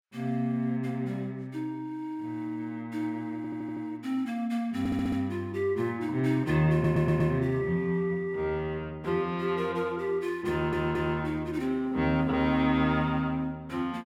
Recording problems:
stutter; 4 times, first at 3.5 s

